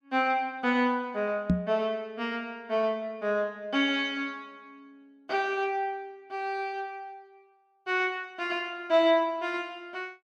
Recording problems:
knock on the microphone; at 1.5 s; peak +8 dB vs average level

